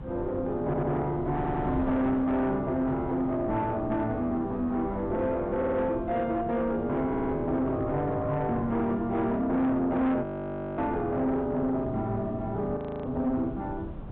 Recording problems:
treble missing; nothing above 4 kHz
distortion; soft clipping, signal-to-distortion ratio 11 dB
wind noise; below 260 Hz, SNR 12 dB
stutter; 4 times, first at 0.5 s
audio freezing; at 10 s for 0.5 s and at 13 s

